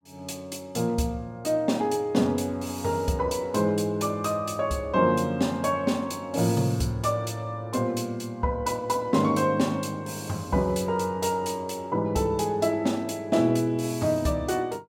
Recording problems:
none

